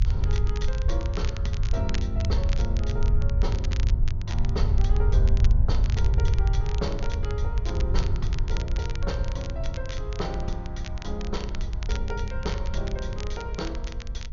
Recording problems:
treble cut off; nothing above 6.9 kHz
low-frequency rumble; below 80 Hz, SNR -8 dB
crackle; vinyl, SNR 8 dB

